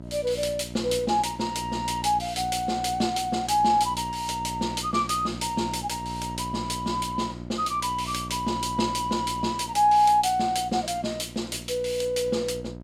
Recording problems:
hum; 60 Hz, harmonics up to 1 kHz, SNR 13 dB

